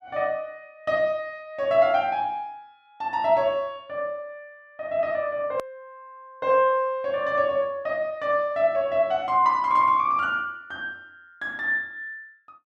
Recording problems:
hard cut with a click; at 5.5 s

